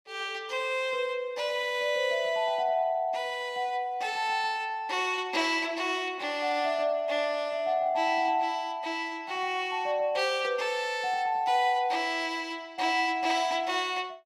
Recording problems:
none

